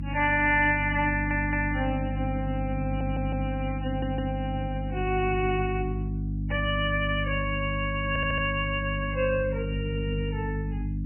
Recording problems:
lossy compression; MP3, log-spectral distance 4 dB, nothing above 2.4 kHz
hum; 50 Hz, harmonics up to 300 Hz, SNR 3 dB
audio stuttering; 4 times, first at 1 s

